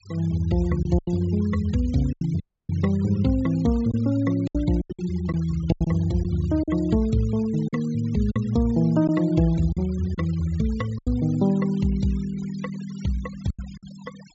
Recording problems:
low-pass filter; nothing above 8 kHz
denoising artefacts; signal-to-artefact ratio 23 dB
packet loss; 7% of the sound replaced, filled with silence
dropout; at 2.5 s

